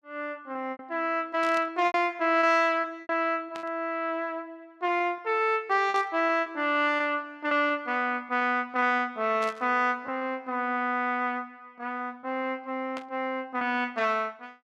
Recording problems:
packet loss; 6% of the sound replaced, filled with repeated pitch periods
static burst; 5 times, first at 1.5 s; peak -9 dB vs average level

